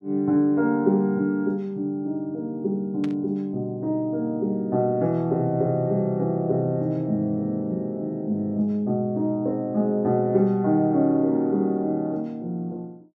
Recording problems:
static burst; at 3 s; peak -13 dB vs average level

